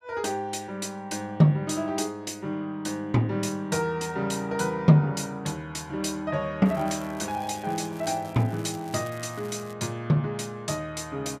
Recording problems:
crackling; from 6.5 to 9.5 s; loose cable, SNR 22 dB

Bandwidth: 14.5 kHz